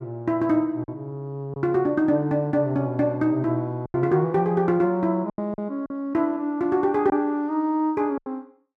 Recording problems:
lost packets; 5% of the sound replaced, filled with silence

